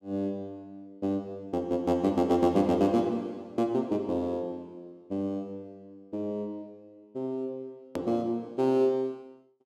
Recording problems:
hard cut with a click; at 8 s

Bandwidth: 13.5 kHz